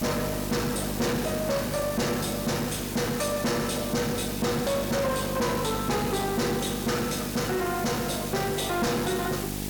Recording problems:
distortion; soft clipping, signal-to-distortion ratio 8 dB
mains hum; 50 Hz, harmonics up to 1 kHz, SNR 7 dB
hiss; SNR 8 dB

